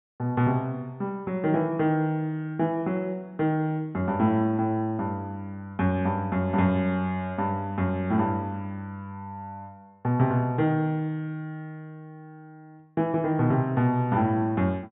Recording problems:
treble missing; nothing above 4 kHz

